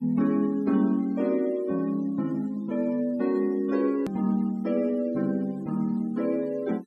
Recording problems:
noise reduction artefacts; signal-to-artefact ratio 27 dB
edit click; at 4 s

